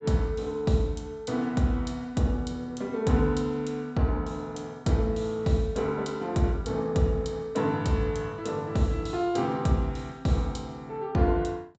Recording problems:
treble cut off; nothing above 8 kHz

